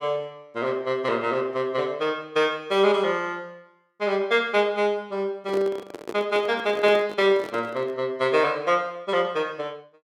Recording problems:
microphone handling noise; from 5.5 to 8 s; peak -5 dB vs average level

